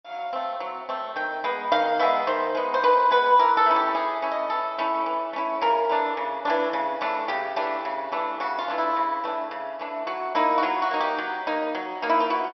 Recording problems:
low-pass filter; nothing above 5.7 kHz

